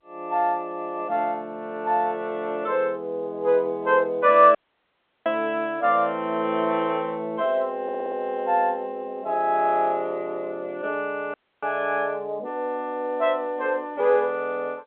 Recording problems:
phone line; 260 Hz to 3.6 kHz, G.711
audio cutting out; at 4.5 s for 0.5 s and at 11 s
audio stuttering; at 8 s

